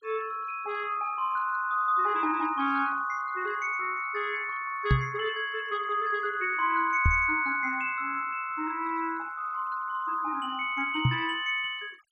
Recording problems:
noise reduction artefacts; signal-to-artefact ratio 25 dB
microphone thump; at 5 s, at 7 s and at 11 s; peak +8 dB vs average level

